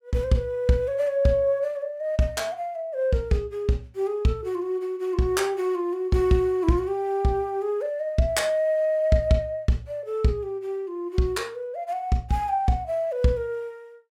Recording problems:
none

